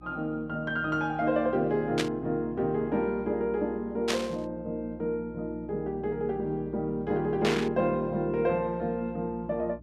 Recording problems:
hum; 60 Hz, harmonics up to 360 Hz, SNR 19 dB
burst of static; at 2 s, at 4 s and at 7.5 s; peak +4 dB vs average level

